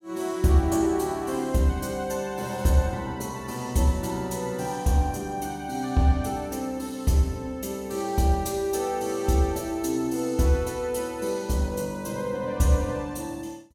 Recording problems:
none

